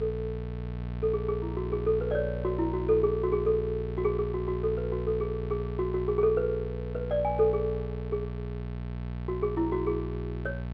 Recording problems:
electrical hum; 60 Hz, harmonics up to 1.1 kHz, SNR 6 dB

